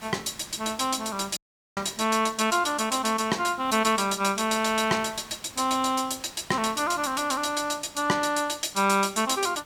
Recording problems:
background hiss; slope -3 dB per octave, SNR 22 dB
audio cutting out; at 1.5 s

